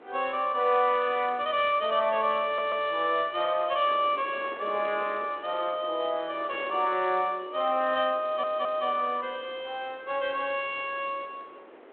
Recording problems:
telephone audio; 300 Hz to 3.5 kHz, G.726
wind on the microphone; below 1.1 kHz, SNR 20 dB
stutter; at 2.5 s and at 8 s

